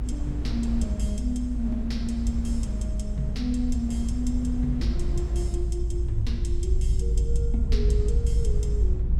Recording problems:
hum; 60 Hz, harmonics up to 2.3 kHz, SNR 30 dB
low-frequency rumble; below 58 Hz, strongest tone 54 Hz, SNR -3 dB
wind noise; below 230 Hz, SNR 8 dB

